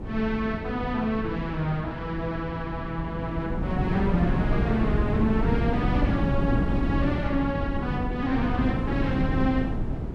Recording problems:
wind on the microphone; below 250 Hz, SNR 0 dB

